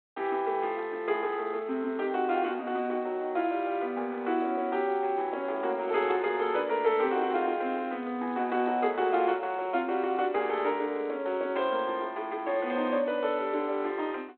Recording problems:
phone line; 220 Hz to 3.6 kHz, G.726

